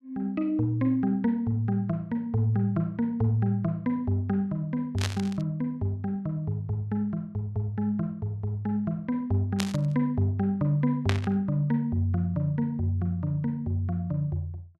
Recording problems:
burst of static; at 5 s, at 9.5 s and at 11 s; peak +2 dB vs average level

